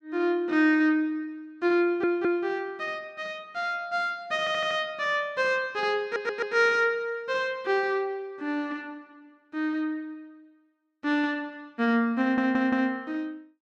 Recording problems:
stutter; 4 times, first at 2 s

